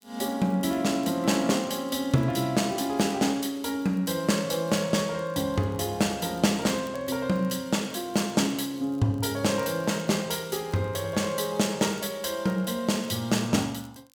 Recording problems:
crackle; vinyl, SNR 30 dB

